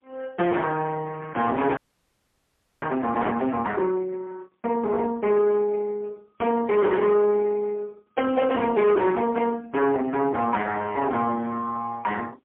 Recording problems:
phone line; 320 Hz to 3.3 kHz, AMR-NB, then MP3
distortion; soft clipping, signal-to-distortion ratio 9 dB
frozen audio; at 2 s for 1 s

